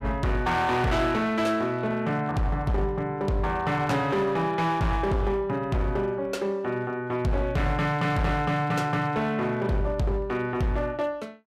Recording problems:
distorted audio; hard clipping, signal-to-distortion ratio 10 dB

